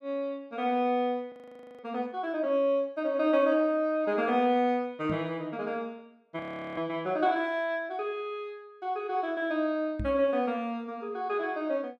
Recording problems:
audio freezing; at 1.5 s and at 6.5 s
knock on the microphone; at 5 s and at 10 s; peak -2 dB vs average level

